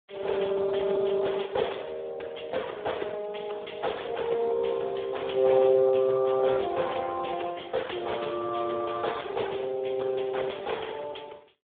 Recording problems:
telephone audio; 340 Hz to 3.6 kHz, Speex

